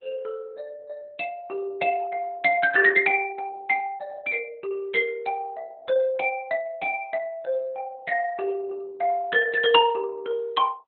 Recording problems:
lossy compression; Opus, log-spectral distance 3 dB

